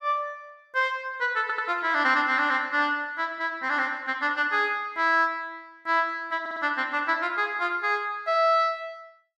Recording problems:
stutter; at 1.5 s and at 6.5 s

